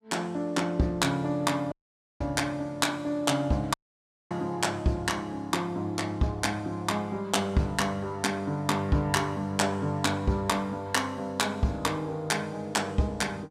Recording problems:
dropout; at 1.5 s and at 3.5 s for 0.5 s

